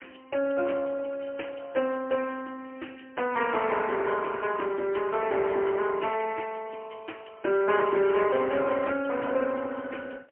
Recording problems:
phone line; 240 Hz to 3 kHz, AMR-NB, then MP3

